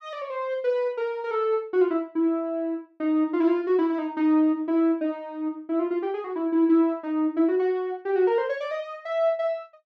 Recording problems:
none

